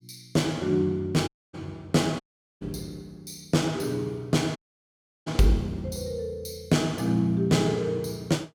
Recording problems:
dropout; at 1.5 s, at 2 s and at 4.5 s for 0.5 s

